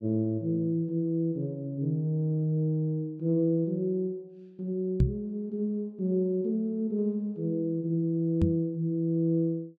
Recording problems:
knock on the microphone; at 5 s and at 8.5 s; peak +9 dB vs average level

